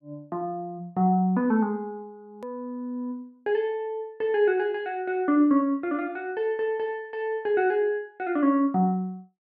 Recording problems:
hard cut with a click; at 2.5 s

